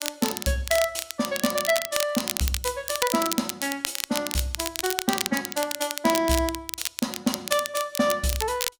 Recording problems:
crackling; vinyl, SNR 3 dB

